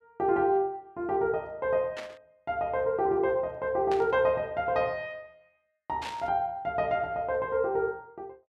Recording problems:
static burst; at 2 s, at 4 s and at 6 s; peak -6 dB vs average level

